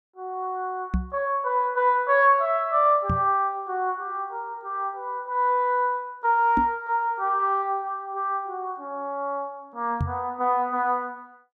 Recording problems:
microphone thump; 4 times, first at 1 s; peak +3 dB vs average level

